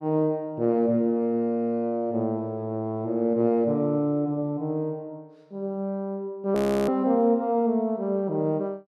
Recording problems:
audio freezing; at 6.5 s

